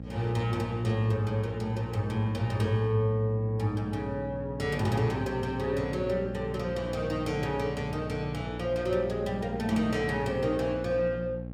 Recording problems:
hum; 60 Hz, harmonics up to 780 Hz, SNR 9 dB

